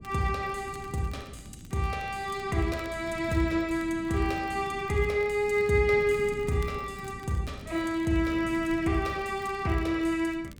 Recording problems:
wind on the microphone; below 250 Hz, SNR 17 dB
crackling; vinyl, SNR 27 dB

